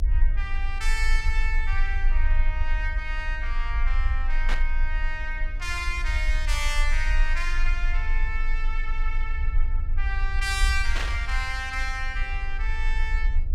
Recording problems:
hum; 60 Hz, harmonics up to 720 Hz, SNR 21 dB
rumble; below 42 Hz, strongest tone 22 Hz, SNR -2 dB
burst of static; at 4.5 s and at 11 s; peak +3 dB vs average level

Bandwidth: 16.5 kHz